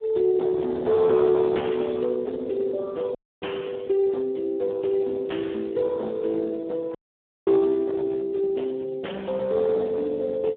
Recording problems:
phone line; 260 Hz to 3.2 kHz, Speex
distortion; hard clipping, signal-to-distortion ratio 13 dB
dropout; at 3 s and at 7 s for 0.5 s

